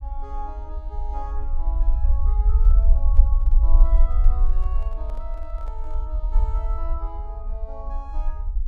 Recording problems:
low-frequency rumble; below 48 Hz, strongest tone 24 Hz, SNR -16 dB
handling noise; from 2.5 to 6 s; peak -4 dB vs average level

